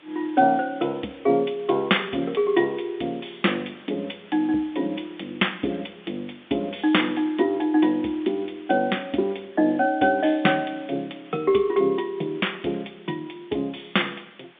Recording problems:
telephone audio; 220 Hz to 3.6 kHz, G.711
background hiss; SNR 25 dB

